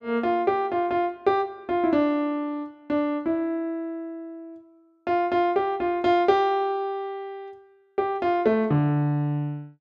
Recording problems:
none

